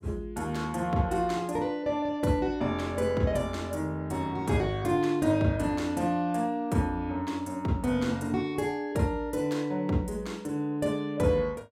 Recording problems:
none

